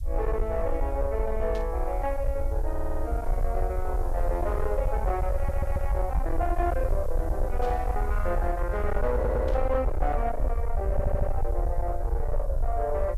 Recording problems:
distortion; soft clipping, signal-to-distortion ratio 11 dB
background hiss; slope +2 dB per octave, SNR 27 dB
low-frequency rumble; below 62 Hz, SNR 0 dB
static burst; at 1.5 s, at 7.5 s and at 9.5 s; peak -12 dB vs average level
audio stuttering; 4 times, first at 2.5 s

